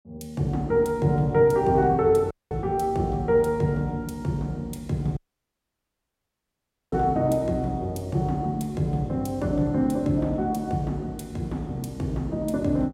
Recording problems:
audio cutting out; at 2.5 s and at 5 s for 2 s

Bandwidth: 16 kHz